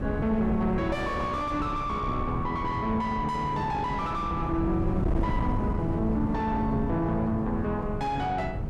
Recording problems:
distortion; soft clipping, signal-to-distortion ratio 7 dB
wind noise; below 210 Hz, SNR 4 dB

